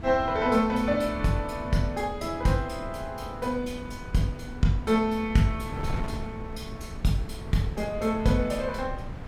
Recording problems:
wind noise; below 210 Hz, SNR 11 dB

